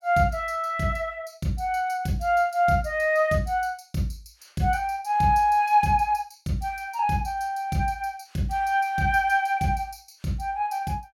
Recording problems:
none

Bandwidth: 17 kHz